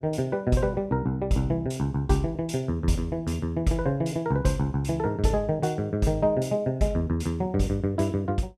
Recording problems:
none

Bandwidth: 13.5 kHz